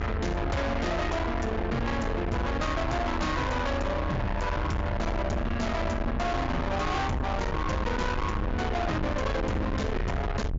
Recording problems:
treble cut off; nothing above 7.2 kHz
distortion; soft clipping, signal-to-distortion ratio 6 dB
low-frequency rumble; below 700 Hz, SNR 2 dB

